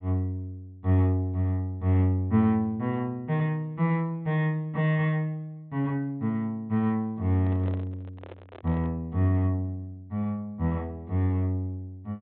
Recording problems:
treble cut off; nothing above 4 kHz
microphone handling noise; from 7.5 to 9 s; peak -11 dB vs average level

